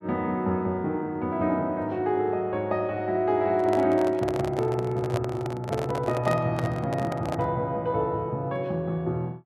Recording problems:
microphone handling noise; from 3.5 to 7.5 s; peak 0 dB vs average level

